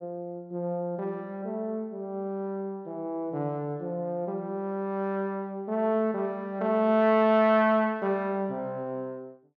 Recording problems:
treble cut off; nothing above 6.9 kHz

